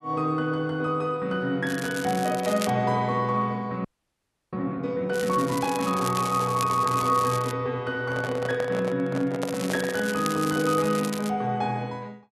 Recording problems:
crackling; from 1.5 to 2.5 s, from 5 to 7.5 s and from 9.5 to 11 s; loose cable, SNR 11 dB
audio freezing; at 4 s for 0.5 s
microphone handling noise; from 8 to 10 s; peak -1 dB vs average level

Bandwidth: 12.5 kHz